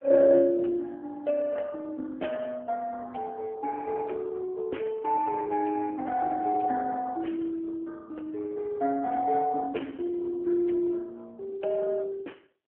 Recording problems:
telephone audio; 240 Hz to 2.9 kHz, AMR-NB

